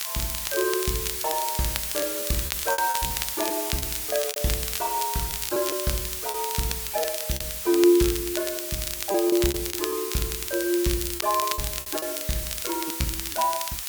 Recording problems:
hiss; slope +3 dB per octave, SNR 2 dB
crackle; vinyl, SNR 6 dB
lost packets; 10% of the sound replaced, filled with repeated pitch periods

